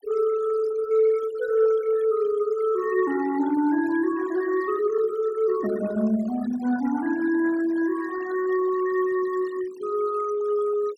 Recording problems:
denoising artefacts; signal-to-artefact ratio 19 dB

